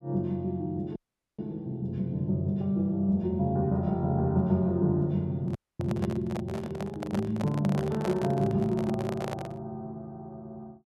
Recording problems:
audio cutting out; at 1 s and at 5.5 s
handling noise; from 5.5 to 9.5 s; peak -3 dB vs average level

